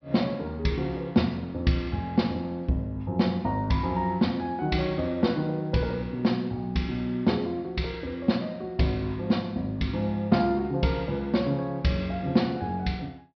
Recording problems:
low-pass filter; nothing above 5.5 kHz

